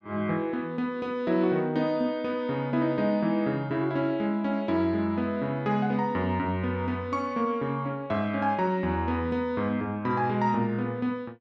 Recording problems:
none

